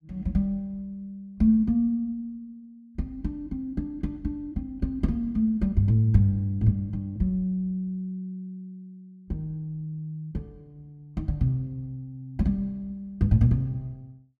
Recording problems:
none

